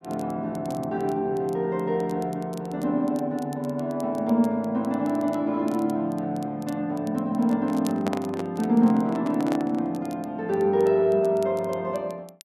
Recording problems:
crackle; vinyl, SNR 26 dB
microphone handling noise; from 7.5 to 10 s; peak -1 dB vs average level

